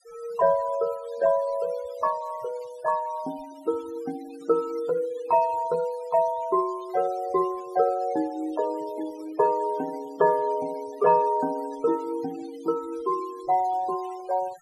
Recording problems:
noise reduction artefacts; signal-to-artefact ratio 21 dB

